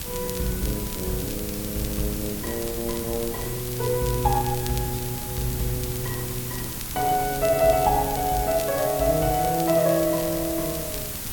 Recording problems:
background hiss; slope 0 dB per octave, SNR 6 dB
wind on the microphone; below 200 Hz, SNR 13 dB
crackle; vinyl, SNR 16 dB

